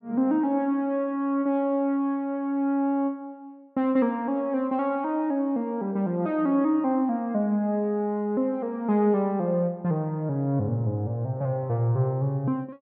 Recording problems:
none

